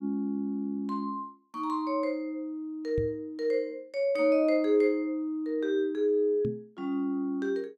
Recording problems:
microphone bump; at 3 s and at 6.5 s; peak -1 dB vs average level

